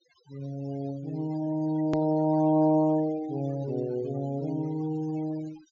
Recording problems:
low-pass filter; nothing above 7.2 kHz
noise reduction artefacts; signal-to-artefact ratio 21 dB
edit click; at 2 s

